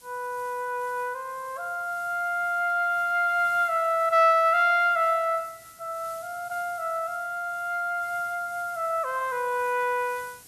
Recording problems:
hiss; SNR 23 dB

